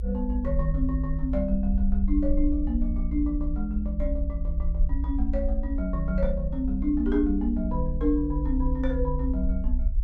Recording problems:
low-frequency rumble; below 60 Hz, SNR 1 dB

